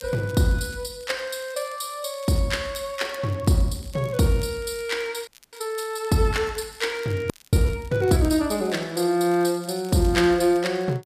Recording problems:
crackle; vinyl, SNR 25 dB
audio freezing; at 5.5 s and at 7.5 s

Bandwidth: 14.5 kHz